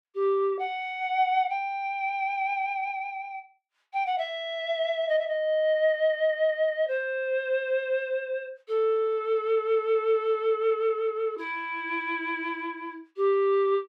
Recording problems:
none

